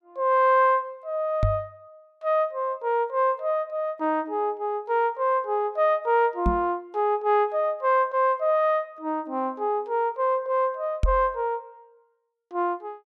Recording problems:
microphone bump; at 1.5 s, at 6.5 s and at 11 s; peak +5 dB vs average level

